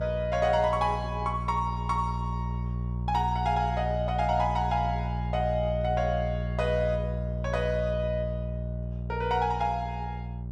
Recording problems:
hum; 60 Hz, harmonics up to 420 Hz, SNR 4 dB

